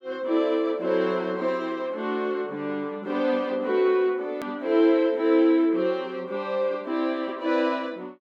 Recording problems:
edit click; at 4.5 s

